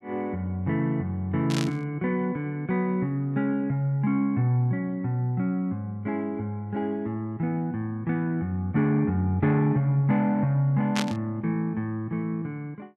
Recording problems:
burst of static; at 1.5 s and at 11 s; peak +1 dB vs average level

